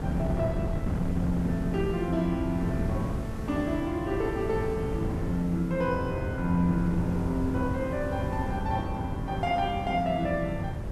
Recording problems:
hiss; SNR 22 dB
wind on the microphone; below 220 Hz, SNR 4 dB

